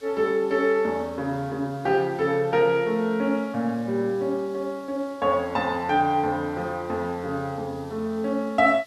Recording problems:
hiss; slope 0 dB per octave, SNR 27 dB

